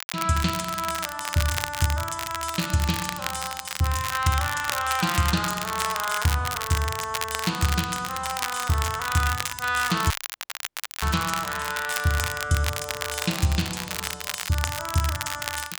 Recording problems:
crackling; vinyl, SNR 5 dB
dropout; at 10 s for 1 s

